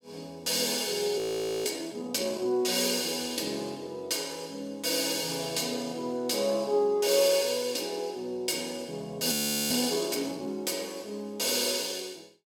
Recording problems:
audio freezing; at 1 s and at 9.5 s

